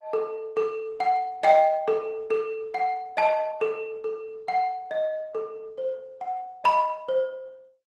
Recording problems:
codec artefacts; Opus, then Opus, log-spectral distance 2 dB

